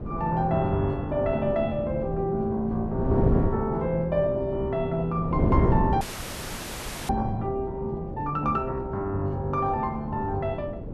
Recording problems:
wind noise; below 300 Hz, SNR 4 dB
frozen audio; at 6 s for 1 s

